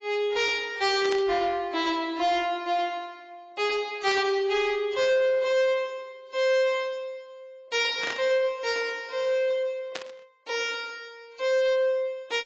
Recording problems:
lossy codec; AAC, log-spectral distance 2 dB, nothing above 7.3 kHz
distorted audio; soft clipping, signal-to-distortion ratio 11 dB
static burst; 4 times, first at 1 s; peak -4 dB vs average level

